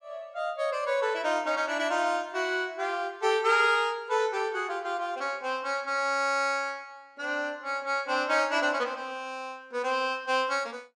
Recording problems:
none

